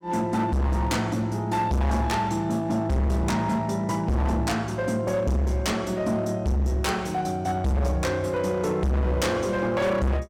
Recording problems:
distortion; hard clipping, signal-to-distortion ratio 6 dB

